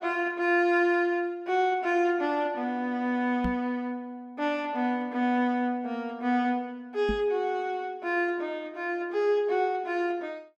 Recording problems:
microphone bump; at 3.5 s and at 7 s; peak 0 dB vs average level

